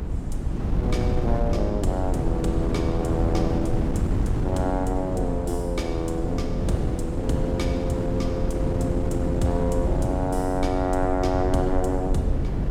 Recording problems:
rumble; below 72 Hz, SNR 6 dB
wind noise; below 250 Hz, SNR 0 dB

